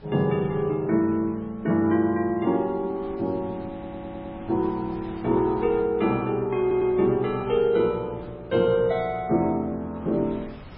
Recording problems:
lossy codec; MP3, log-spectral distance 2 dB
wind noise; below 860 Hz, SNR 22 dB
stutter; at 3.5 s and at 6.5 s

